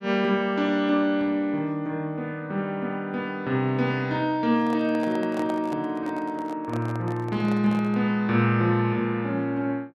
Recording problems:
microphone handling noise; from 4.5 to 8 s; peak -6 dB vs average level

